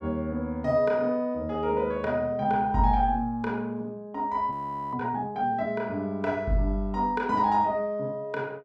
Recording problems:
audio freezing; at 4.5 s

